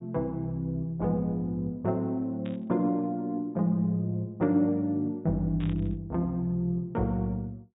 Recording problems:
low-pass filter; nothing above 4 kHz
static burst; at 2.5 s and at 5.5 s; peak -13 dB vs average level

